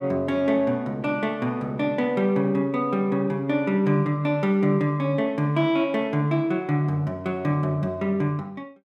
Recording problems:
none

